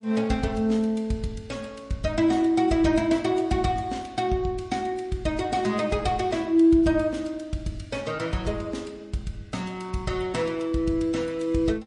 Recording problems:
codec artefacts; MP3, log-spectral distance 2 dB, nothing above 9.8 kHz

